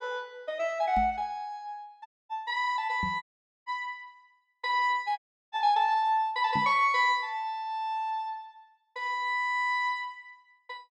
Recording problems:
microphone thump; at 1 s, at 3 s and at 6.5 s; peak -2 dB vs average level
dropout; at 2 s, at 3 s and at 5 s

